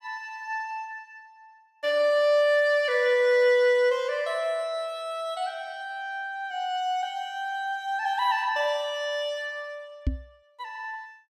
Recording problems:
knock on the microphone; at 10 s; peak +3 dB vs average level

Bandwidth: 14.5 kHz